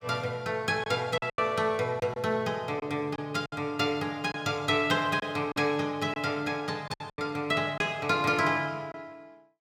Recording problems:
packet loss; 6% of the sound replaced, filled with silence

